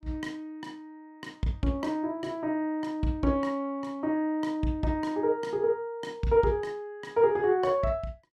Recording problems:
none

